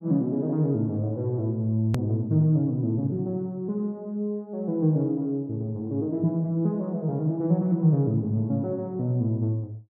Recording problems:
edit click; at 2 s

